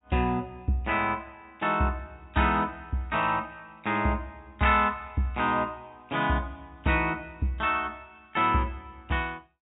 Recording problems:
treble missing; nothing above 4 kHz

